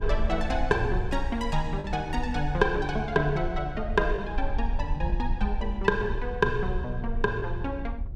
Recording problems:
rumble; below 56 Hz, SNR 5 dB
packet loss; 1.5% of the sound replaced, filled with the last packet

